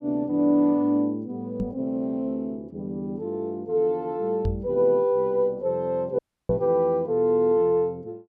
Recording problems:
knock on the microphone; at 1.5 s, at 4.5 s and at 6.5 s; peak +1 dB vs average level
dropout; at 6 s

